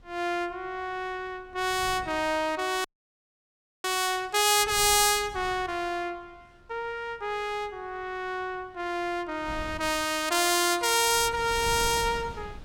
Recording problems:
wind noise; below 240 Hz, SNR 17 dB
frozen audio; at 3 s for 1 s

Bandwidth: 17.5 kHz